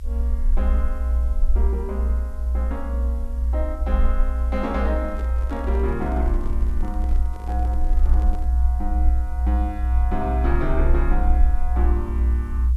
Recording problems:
background hiss; slope +3 dB per octave, SNR 27 dB
low-frequency rumble; below 62 Hz, strongest tone 62 Hz, SNR -7 dB
microphone handling noise; from 5 to 8.5 s; peak -6 dB vs average level

